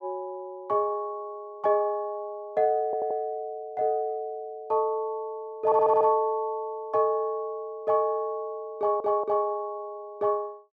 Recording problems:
audio stuttering; at 3 s, at 5.5 s and at 9 s

